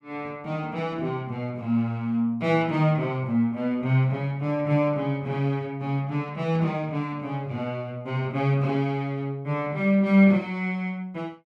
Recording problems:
none

